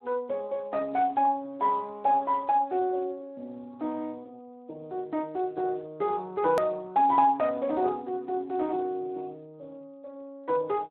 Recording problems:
phone line; 220 Hz to 3 kHz, Speex
hard cut with a click; at 6.5 s

